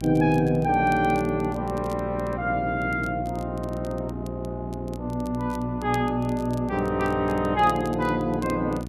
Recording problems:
hum; 60 Hz, harmonics up to 780 Hz, SNR 9 dB
crackle; vinyl, SNR 25 dB

